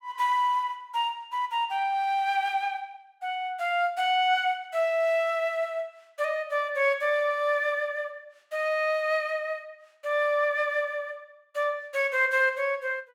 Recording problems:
none

